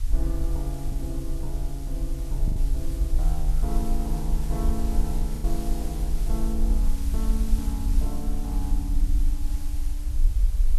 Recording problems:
hiss; slope +2 dB per octave, SNR 10 dB
low-frequency rumble; below 48 Hz, SNR -6 dB
wind noise; below 280 Hz, SNR 20 dB
packet loss; 1.9% of the sound replaced, filled with the last packet

